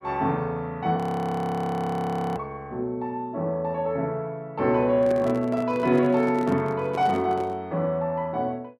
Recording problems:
frozen audio; at 1 s for 1.5 s
microphone handling noise; from 5 to 7.5 s; peak -5 dB vs average level

